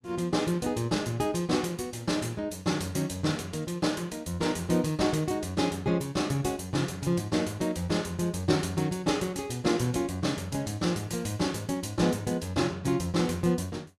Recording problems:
none

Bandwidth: 14 kHz